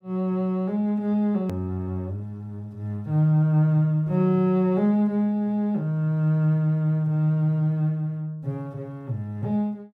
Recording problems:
hard cut with a click; at 1.5 s

